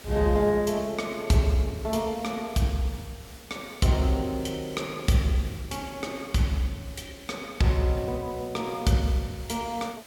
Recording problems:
background hiss; slope -2 dB per octave, SNR 20 dB

